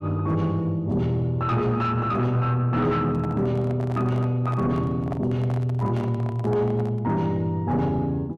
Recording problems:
distorted audio; soft clipping, signal-to-distortion ratio 11 dB
microphone handling noise; from 3 to 7 s; peak -4 dB vs average level

